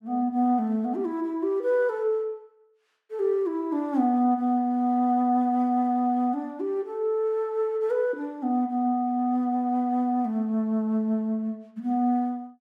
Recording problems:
none

